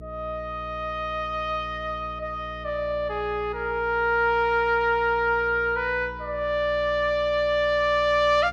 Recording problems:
hum; 60 Hz, harmonics up to 480 Hz, SNR 18 dB

